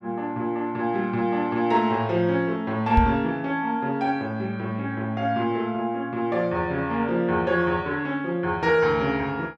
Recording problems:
knock on the microphone; at 3 s; peak +7 dB vs average level

